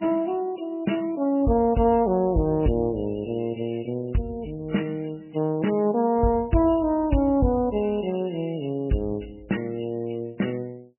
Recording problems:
lossy compression; MP3, log-spectral distance 4 dB, nothing above 2.9 kHz

